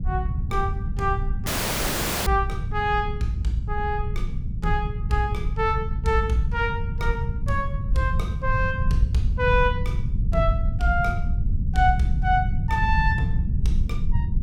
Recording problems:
low-frequency rumble; below 100 Hz, SNR 1 dB
dropout; at 1.5 s for 1 s

